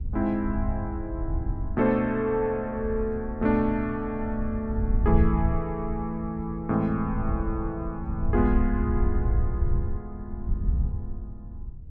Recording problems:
wind noise; below 80 Hz, SNR 3 dB

